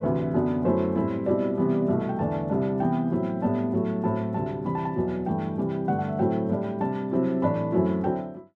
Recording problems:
none

